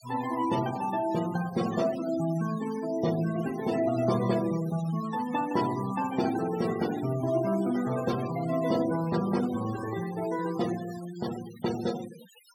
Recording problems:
denoising artefacts; signal-to-artefact ratio 15 dB

